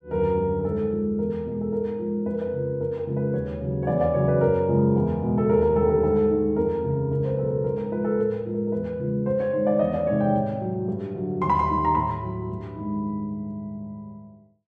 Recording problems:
none

